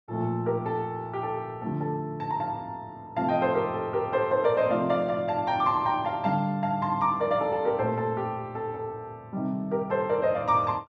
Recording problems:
none

